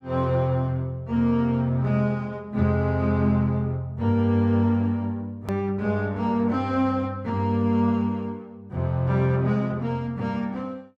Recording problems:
click at an edit; at 5.5 s

